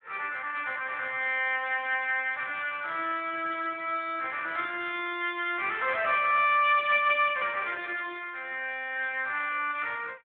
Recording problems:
telephone audio; 300 Hz to 3.6 kHz, Speex
burst of static; at 2.5 s, at 6.5 s and at 9 s; peak -18 dB vs average level

